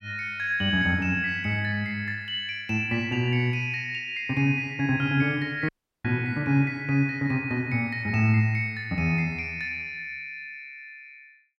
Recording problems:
audio cutting out; at 5.5 s

